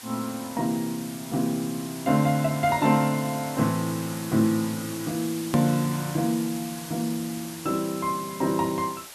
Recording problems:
background hiss; slope 0 dB per octave, SNR 12 dB
edit click; at 5.5 s

